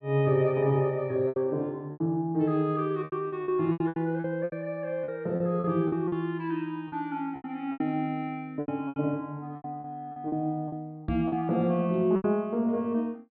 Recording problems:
treble cut off; nothing above 4.8 kHz
packet loss; 12% of the sound replaced, filled with repeated pitch periods
microphone bump; at 11 s; peak -2 dB vs average level

